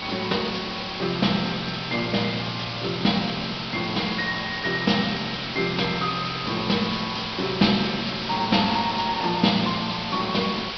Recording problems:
low-pass filter; nothing above 5.5 kHz
background hiss; SNR 5 dB

